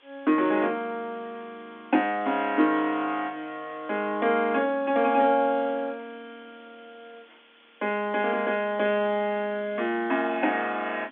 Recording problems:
telephone audio; 240 Hz to 3.6 kHz, G.711
hiss; SNR 29 dB

